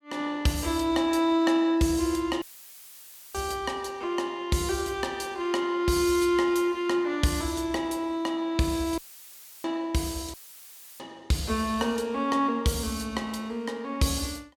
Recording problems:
dropout; at 2.5 s for 1 s, at 9 s for 0.5 s and at 10 s for 0.5 s; filled with static

